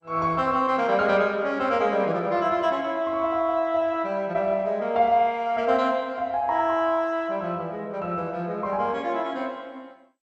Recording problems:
codec artefacts; MP2, log-spectral distance 2 dB

